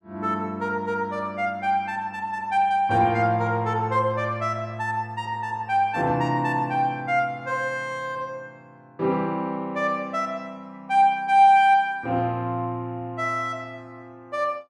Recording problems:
none

